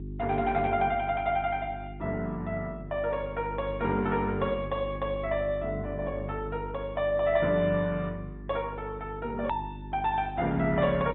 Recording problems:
treble missing; nothing above 3.2 kHz
lossy codec; Opus, log-spectral distance 2 dB
electrical hum; 50 Hz, harmonics up to 400 Hz, SNR 11 dB
edit click; at 9.5 s

